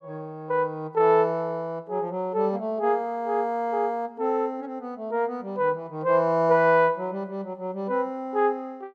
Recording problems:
none

